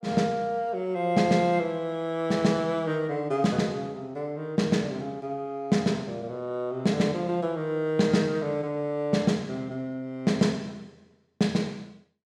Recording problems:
none

